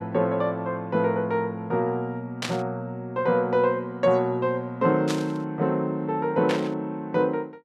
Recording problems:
burst of static; at 2.5 s, at 5 s and at 6.5 s; peak 0 dB vs average level

